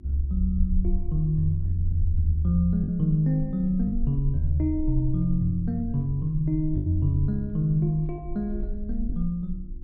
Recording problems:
electrical hum; 50 Hz, harmonics up to 350 Hz, SNR 25 dB
low-frequency rumble; below 44 Hz, strongest tone 24 Hz, SNR 9 dB
lost packets; 2% of the sound replaced, filled with the last packet

